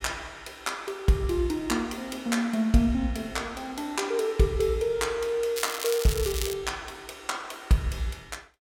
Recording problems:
crackling; at 5.5 s; loose cable, SNR 6 dB

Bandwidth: 16.5 kHz